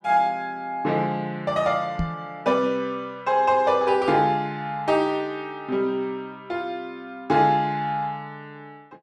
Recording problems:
microphone bump; at 2 s; peak +1 dB vs average level

